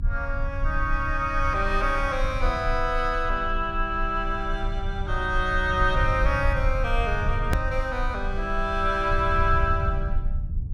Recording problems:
low-frequency rumble; below 70 Hz, strongest tone 24 Hz, SNR 4 dB
edit click; at 7.5 s

